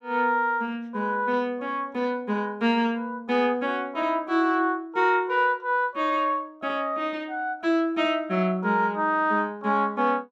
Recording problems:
none

